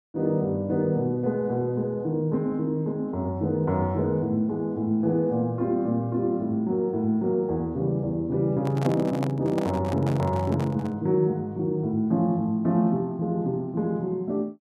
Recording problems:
handling noise; from 8.5 to 11 s; peak -3 dB vs average level

